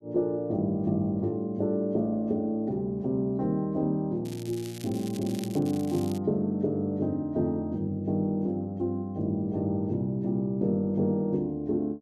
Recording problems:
crackling; from 4.5 to 6 s; loose cable, SNR 17 dB

